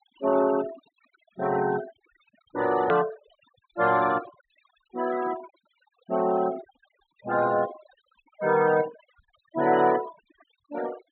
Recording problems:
treble missing; nothing above 4 kHz
denoising artefacts; signal-to-artefact ratio 16 dB
click at an edit; at 3 s

